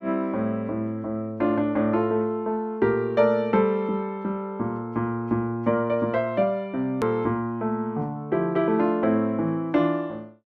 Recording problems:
hard cut with a click; at 7 s

